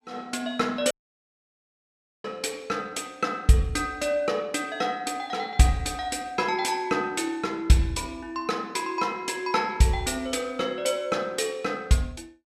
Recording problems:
audio cutting out; at 1 s for 1.5 s

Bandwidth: 14.5 kHz